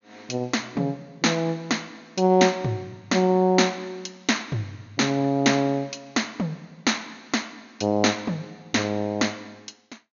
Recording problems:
treble missing; nothing above 6.8 kHz

